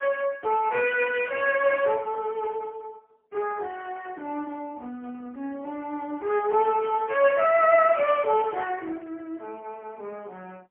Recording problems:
phone line; 240 Hz to 3.3 kHz, AMR-NB, then MP3

